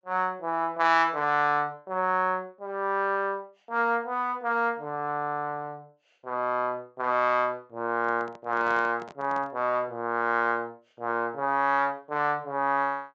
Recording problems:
treble cut off; nothing above 8 kHz
microphone handling noise; from 8 to 9.5 s; peak -12 dB vs average level

